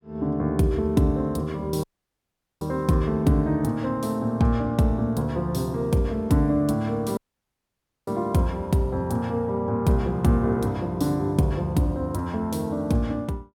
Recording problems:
audio cutting out; at 2 s for 1 s and at 7 s for 1 s

